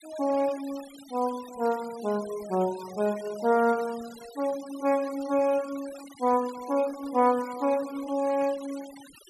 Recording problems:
denoising artefacts; signal-to-artefact ratio 19 dB

